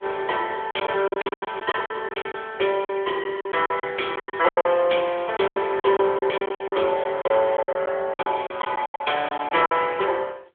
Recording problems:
phone line; 340 Hz to 3.4 kHz, AMR-NB
packet loss; 16% of the sound replaced, filled with silence

